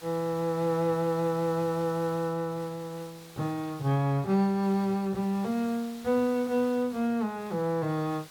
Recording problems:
hiss; slope -1 dB per octave, SNR 21 dB

